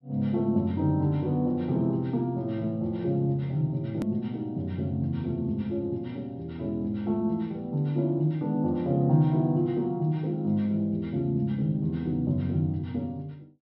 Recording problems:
treble cut off; nothing above 5.3 kHz
click at an edit; at 4 s

